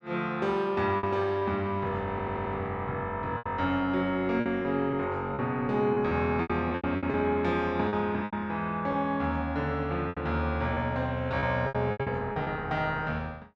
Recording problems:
lost packets; 8% of the sound replaced, filled with repeated pitch periods
stutter; at 2 s

